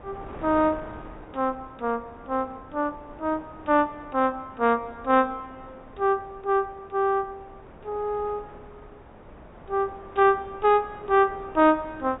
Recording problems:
treble missing; nothing above 4 kHz
wind on the microphone; below 870 Hz, SNR 20 dB

